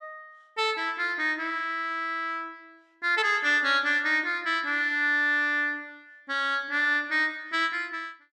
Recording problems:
none

